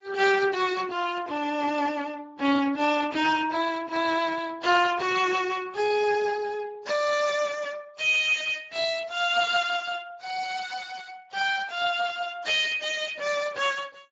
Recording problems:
lossy compression; Vorbis, then Speex, log-spectral distance 5 dB, nothing above 7.3 kHz

